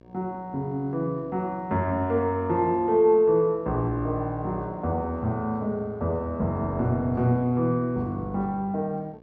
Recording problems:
mains hum; 60 Hz, harmonics up to 1.7 kHz, SNR 25 dB

